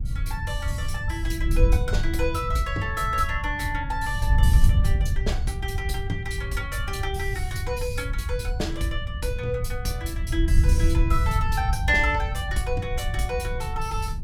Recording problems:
wind noise; below 86 Hz, SNR -2 dB

